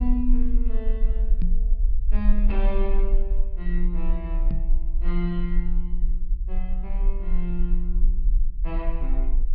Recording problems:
treble cut off; nothing above 5.5 kHz
low-frequency rumble; below 36 Hz, strongest tone 20 Hz, SNR -6 dB
knock on the microphone; at 1.5 s and at 4.5 s; peak +6 dB vs average level

